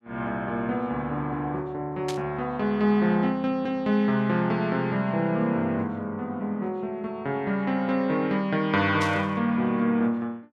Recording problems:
burst of static; at 2 s and at 9 s; peak -5 dB vs average level

